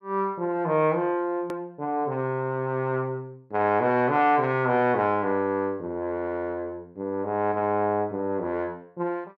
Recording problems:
hard cut with a click; at 1.5 s

